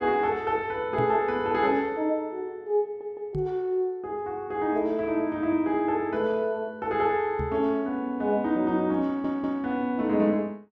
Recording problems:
microphone thump; at 1 s, at 3.5 s and at 7.5 s; peak -2 dB vs average level
stutter; at 3 s and at 9 s

